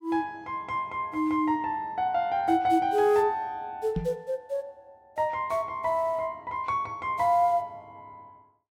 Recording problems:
microphone bump; at 4 s; peak +1 dB vs average level

